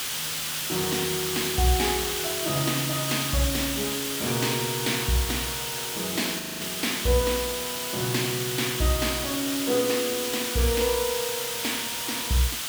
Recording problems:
hiss; slope +2 dB per octave, SNR 0 dB
audio freezing; at 6.5 s

